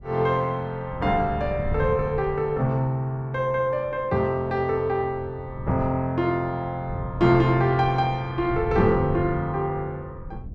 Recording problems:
wind on the microphone; below 130 Hz, SNR 12 dB

